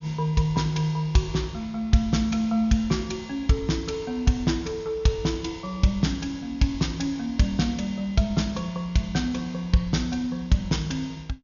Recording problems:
low-pass filter; nothing above 6.8 kHz

